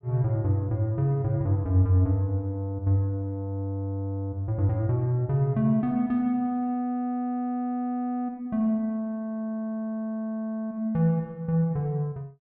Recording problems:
none

